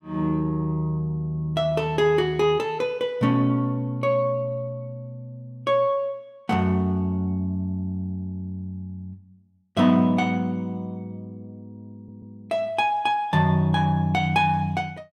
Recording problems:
audio stuttering; at 12 s

